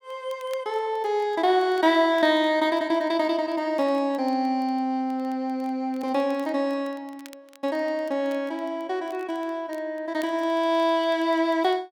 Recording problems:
crackling; vinyl, SNR 30 dB

